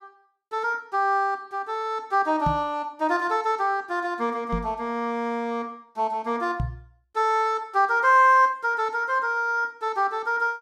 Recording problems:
microphone thump; at 2.5 s, at 4.5 s and at 6.5 s; peak 0 dB vs average level

